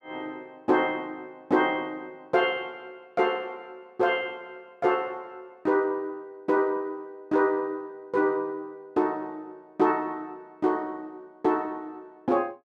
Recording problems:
none

